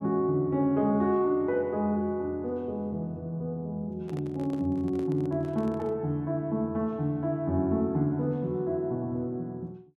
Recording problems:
microphone handling noise; from 4 to 6 s; peak -9 dB vs average level

